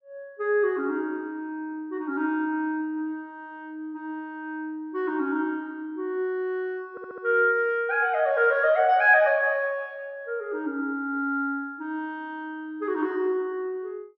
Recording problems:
audio stuttering; at 7 s

